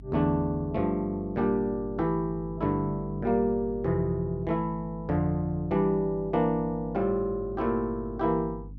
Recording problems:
electrical hum; 50 Hz, harmonics up to 300 Hz, SNR 16 dB

